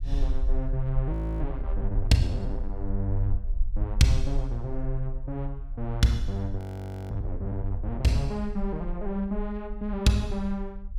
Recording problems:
low-frequency rumble; below 48 Hz, SNR 5 dB
frozen audio; at 1 s and at 6.5 s for 0.5 s

